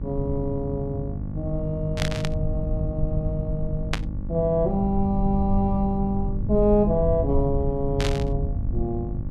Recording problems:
hum; 50 Hz, harmonics up to 850 Hz, SNR 9 dB
rumble; below 92 Hz, SNR 4 dB
burst of static; at 2 s, at 4 s and at 8 s; peak +3 dB vs average level

